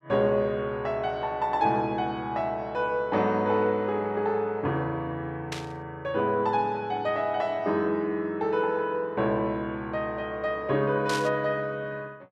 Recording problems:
static burst; at 5.5 s and at 11 s; peak -2 dB vs average level

